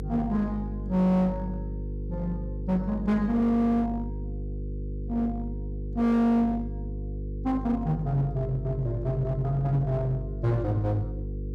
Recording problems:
distorted audio; hard clipping, uneven, signal-to-distortion ratio 9 dB
hum; 50 Hz, harmonics up to 500 Hz, SNR 8 dB

